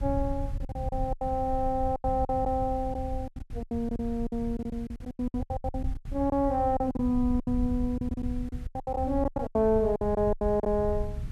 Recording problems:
background hiss; SNR 27 dB
low-frequency rumble; below 90 Hz, SNR 8 dB
lost packets; 18% of the sound replaced, filled with silence

